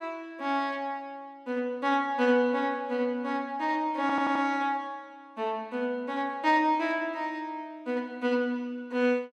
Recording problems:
stutter; at 4 s

